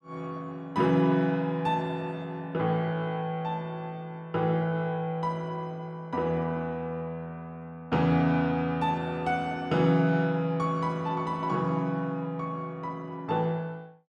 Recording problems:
none

